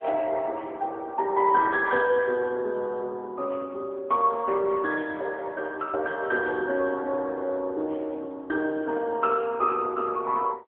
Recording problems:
phone line; 260 Hz to 3.1 kHz, AMR-NB

